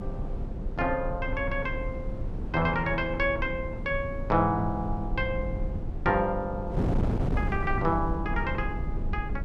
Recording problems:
electrical hum; 50 Hz, harmonics up to 500 Hz, SNR 17 dB
rumble; below 66 Hz, strongest tone 28 Hz, SNR 9 dB
wind on the microphone; below 270 Hz, SNR 6 dB

